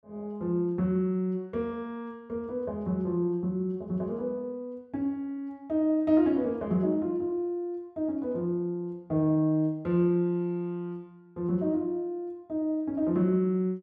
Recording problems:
none

